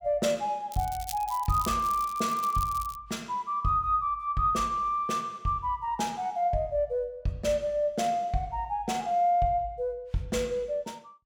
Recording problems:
crackling; from 0.5 to 3 s; loose cable, SNR 14 dB

